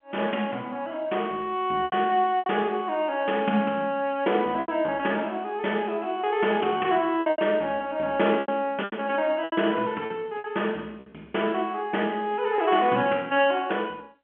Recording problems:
telephone audio; 220 Hz to 3.3 kHz, G.711
lost packets; 6% of the sound replaced, filled with repeated pitch periods

